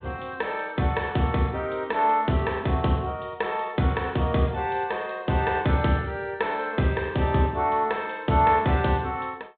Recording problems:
low-pass filter; nothing above 4 kHz

